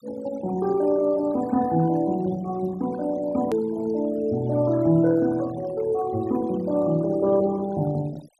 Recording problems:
noise reduction artefacts; signal-to-artefact ratio 21 dB
edit click; at 3.5 s

